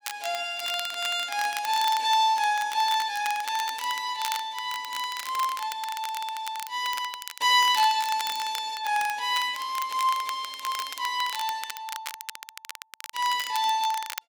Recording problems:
crackling; vinyl, SNR 12 dB

